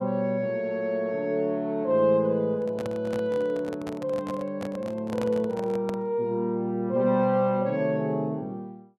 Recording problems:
microphone handling noise; from 2.5 to 6 s; peak -4 dB vs average level

